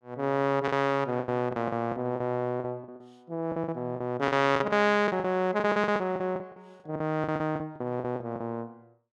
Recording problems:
packet loss; 16% of the sound replaced, filled with the last packet

